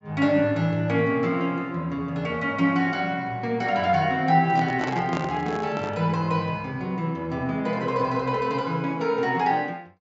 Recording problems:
treble cut off; nothing above 7.5 kHz
microphone handling noise; from 4.5 to 6 s; peak -2 dB vs average level

